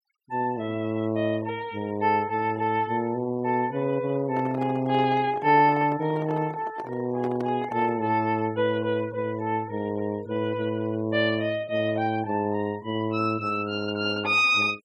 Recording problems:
denoising artefacts; signal-to-artefact ratio 25 dB
handling noise; from 4 to 8 s; peak -6 dB vs average level

